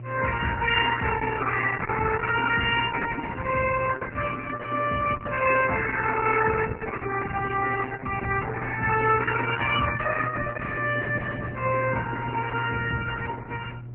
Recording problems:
lossy compression; MP3, then Opus, log-spectral distance 5 dB, nothing above 2.8 kHz
electrical hum; 60 Hz, harmonics up to 720 Hz, SNR 13 dB

